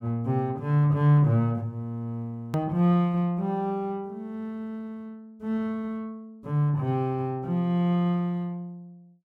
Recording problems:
click at an edit; at 2.5 s

